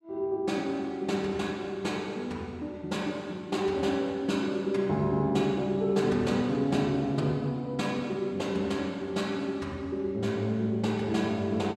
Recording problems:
none

